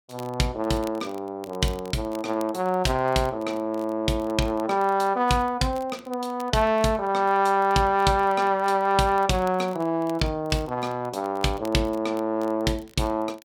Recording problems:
crackling; vinyl, SNR 26 dB

